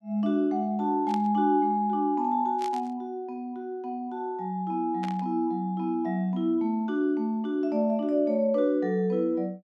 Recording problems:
burst of static; at 1 s, at 2.5 s and at 5 s; peak -10 dB vs average level

